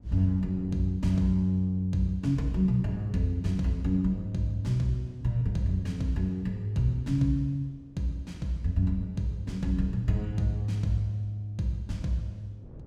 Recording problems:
wind noise; below 240 Hz, SNR 25 dB

